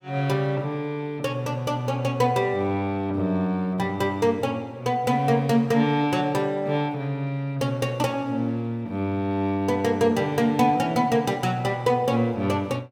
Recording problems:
none

